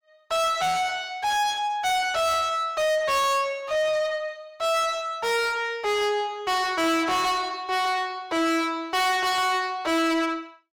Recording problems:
distorted audio; soft clipping, signal-to-distortion ratio 6 dB

